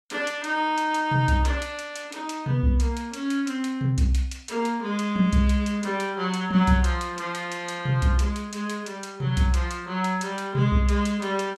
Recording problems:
none

